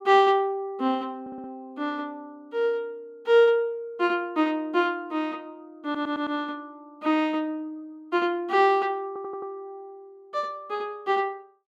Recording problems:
stutter; at 1 s, at 6 s and at 9 s

